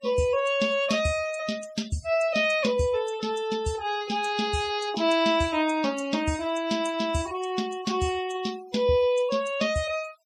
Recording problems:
denoising artefacts; signal-to-artefact ratio 17 dB

